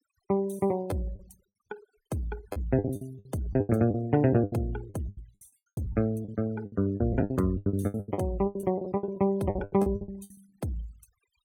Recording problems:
denoising artefacts; signal-to-artefact ratio 26 dB
packet loss; 20% of the sound replaced, filled with the last packet

